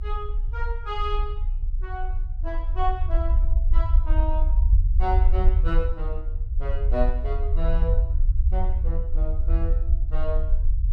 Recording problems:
rumble; below 56 Hz, SNR -8 dB

